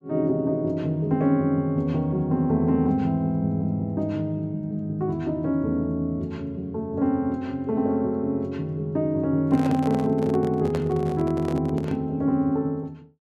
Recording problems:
microphone handling noise; from 9.5 to 12 s; peak -3 dB vs average level

